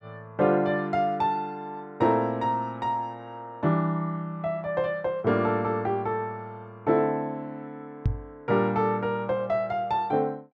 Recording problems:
microphone thump; at 8 s; peak +5 dB vs average level

